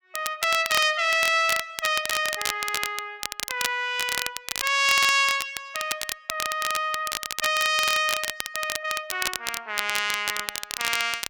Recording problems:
crackle; vinyl, SNR 6 dB

